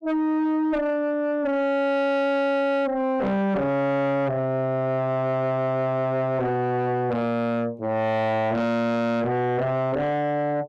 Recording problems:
distorted audio; soft clipping, signal-to-distortion ratio 7 dB

